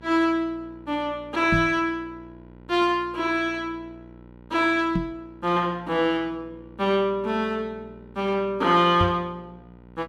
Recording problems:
hum; 60 Hz, harmonics up to 1.4 kHz, SNR 23 dB
microphone bump; at 1.5 s, at 5 s and at 9 s; peak +2 dB vs average level

